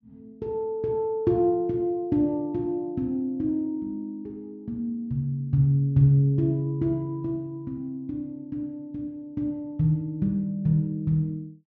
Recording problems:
treble missing; nothing above 6.8 kHz

